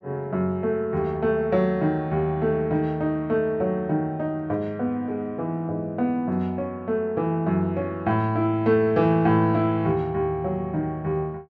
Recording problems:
treble missing; nothing above 7.8 kHz

